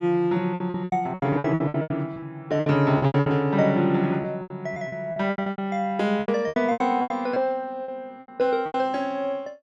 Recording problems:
lost packets; 18% of the sound replaced, filled with repeated pitch periods

